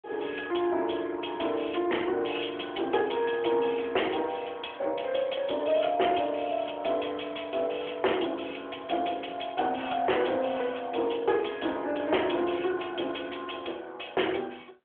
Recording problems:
phone line; 280 Hz to 3.4 kHz, AMR-NB
distortion; soft clipping, signal-to-distortion ratio 13 dB

